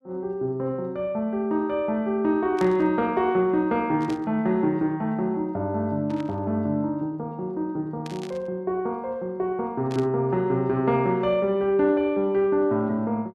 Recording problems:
burst of static; 5 times, first at 2.5 s; peak -12 dB vs average level

